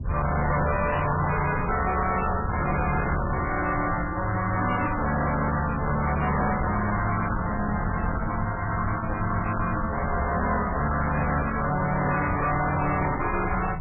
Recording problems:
lossy codec; MP3, log-spectral distance 5 dB, nothing above 2.4 kHz
distorted audio; hard clipping, uneven, signal-to-distortion ratio 7 dB
wind noise; below 190 Hz, SNR 7 dB

